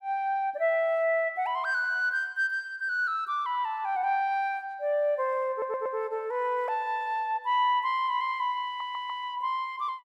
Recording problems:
audio stuttering; at 5.5 s and at 8.5 s

